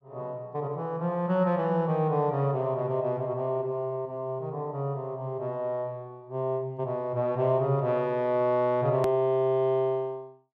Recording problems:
hard cut with a click; at 9 s

